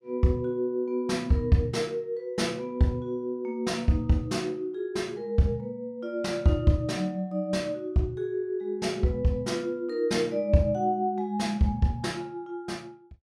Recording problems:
none

